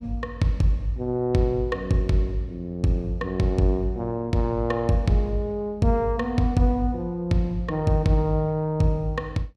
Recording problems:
none

